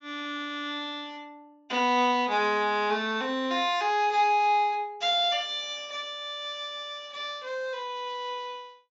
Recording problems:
treble missing; nothing above 7.4 kHz

